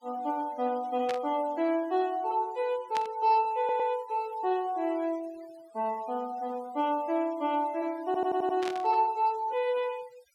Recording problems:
noise reduction artefacts; signal-to-artefact ratio 23 dB
static burst; at 1 s, at 3 s and at 8.5 s; peak -4 dB vs average level
stutter; at 3.5 s and at 8 s

